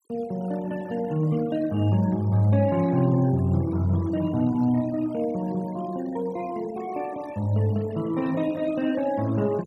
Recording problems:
denoising artefacts; signal-to-artefact ratio 22 dB

